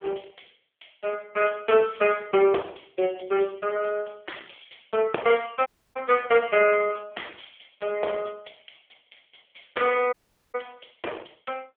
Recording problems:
telephone audio; 320 Hz to 3.2 kHz, AMR-NB
audio cutting out; at 5.5 s and at 10 s

